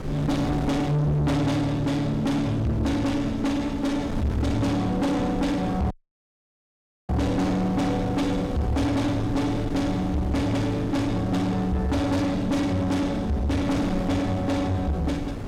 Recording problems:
distorted audio; soft clipping, signal-to-distortion ratio 8 dB
wind noise; below 370 Hz, SNR 8 dB
dropout; at 6 s for 1 s

